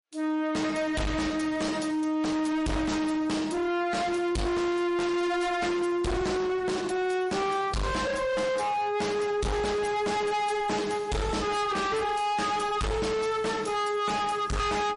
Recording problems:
codec artefacts; MP3, log-spectral distance 3 dB, nothing above 10.4 kHz
distorted audio; soft clipping, signal-to-distortion ratio 6 dB

